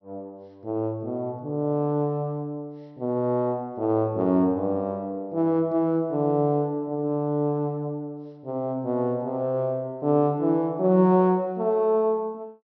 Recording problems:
treble cut off; nothing above 5.9 kHz

